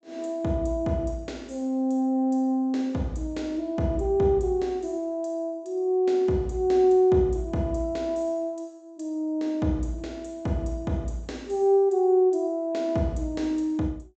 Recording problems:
low-pass filter; nothing above 8 kHz

